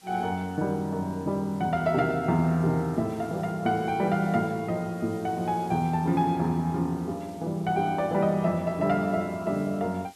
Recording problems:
background hiss; SNR 26 dB

